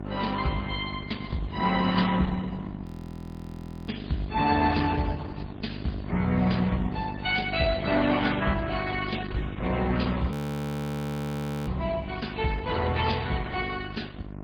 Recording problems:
lossy compression; MP3, then Opus, log-spectral distance 5 dB, nothing above 19.5 kHz
mains hum; 50 Hz, harmonics up to 1.4 kHz, SNR 10 dB
frozen audio; at 3 s for 1 s and at 10 s for 1.5 s
crackle; from 4.5 to 7 s and at 9 s; loose cable, SNR 29 dB

